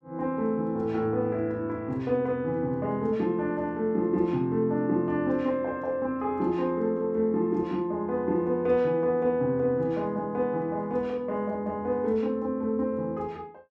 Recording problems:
none

